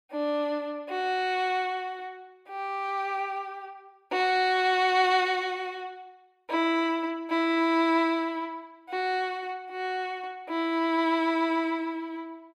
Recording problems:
none

